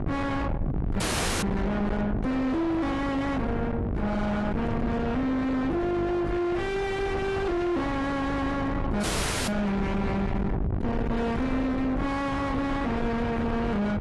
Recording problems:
lossy codec; AAC, log-spectral distance 2 dB, nothing above 11.3 kHz
distortion; soft clipping, signal-to-distortion ratio 5 dB
hum; 50 Hz, harmonics up to 1.2 kHz, SNR 6 dB
rumble; below 390 Hz, SNR 4 dB
audio cutting out; at 1 s and at 9 s

